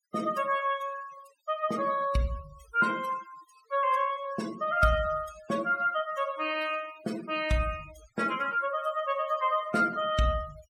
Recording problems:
noise reduction artefacts; signal-to-artefact ratio 17 dB

